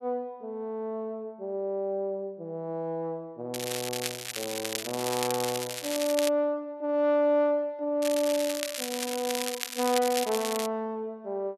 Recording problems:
crackling; from 3.5 to 6.5 s and from 8 to 11 s; loose cable, SNR 4 dB

